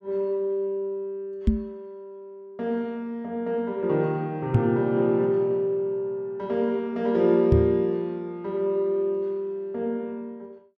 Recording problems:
knock on the microphone; at 1.5 s, at 4.5 s and at 7.5 s; peak +8 dB vs average level

